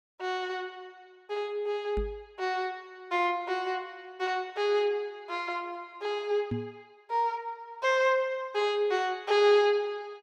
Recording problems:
microphone bump; at 2 s and at 6.5 s; peak 0 dB vs average level

